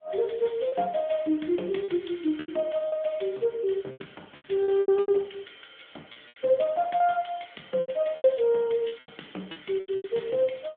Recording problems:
telephone audio; 240 Hz to 3.5 kHz, AMR-NB
packet loss; 11% of the sound replaced, filled with repeated pitch periods

